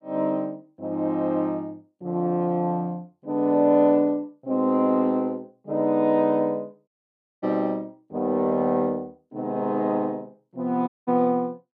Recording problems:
dropout; at 7 s for 0.5 s and at 11 s

